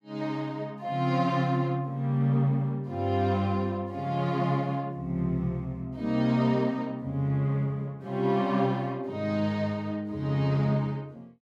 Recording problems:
none

